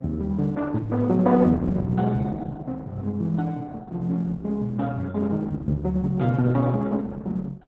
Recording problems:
lossy compression; Opus, then Opus, log-spectral distance 2 dB, nothing above 7.3 kHz

